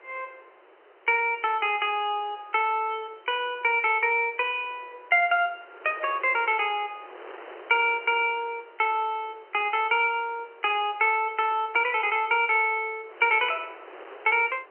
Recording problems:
telephone audio; 320 Hz to 3.1 kHz, G.711
wind noise; below 1.6 kHz, SNR 24 dB

